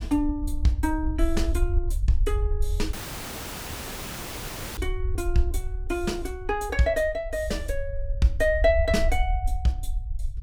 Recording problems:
low-frequency rumble; below 64 Hz, SNR 3 dB
audio cutting out; at 3 s for 2 s

